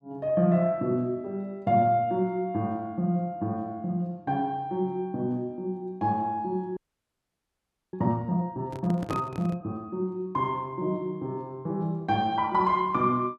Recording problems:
frozen audio; at 7 s for 1 s
handling noise; at 8.5 s; peak -2 dB vs average level

